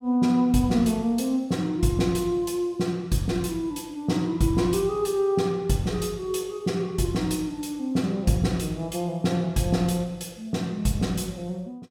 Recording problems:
none

